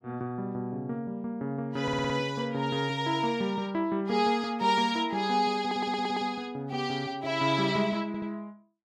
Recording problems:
stutter; at 2 s, at 5.5 s and at 8 s

